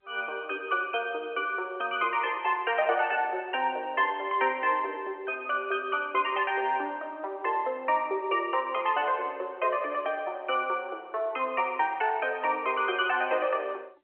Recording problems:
phone line; 320 Hz to 3.2 kHz, G.711

